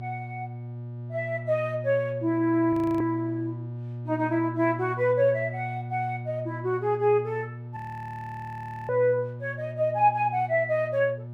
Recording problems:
hum; 60 Hz, harmonics up to 600 Hz, SNR 10 dB
frozen audio; at 2.5 s and at 8 s for 1 s

